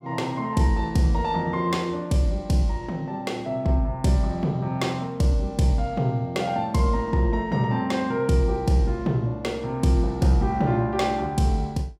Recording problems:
none

